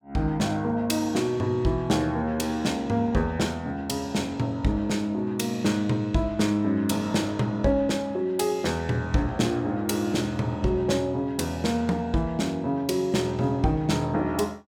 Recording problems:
none

